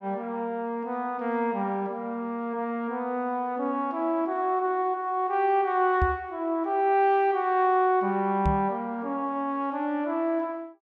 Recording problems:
knock on the microphone; at 6 s and at 8.5 s; peak +3 dB vs average level

